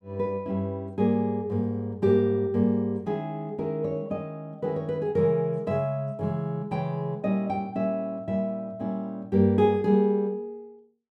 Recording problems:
none

